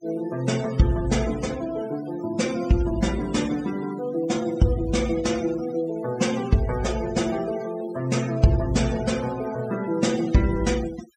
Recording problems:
denoising artefacts; signal-to-artefact ratio 15 dB

